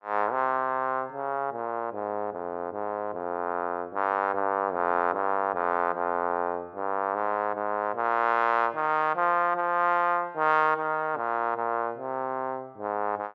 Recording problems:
none

